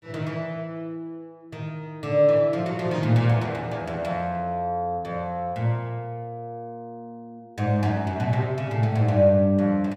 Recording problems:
none

